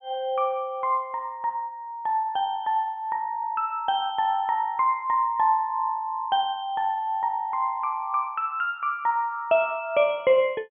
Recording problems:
treble missing; nothing above 3.4 kHz

